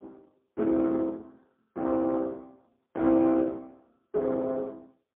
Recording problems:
phone line; 220 Hz to 2 kHz, AMR-NB, then MP3

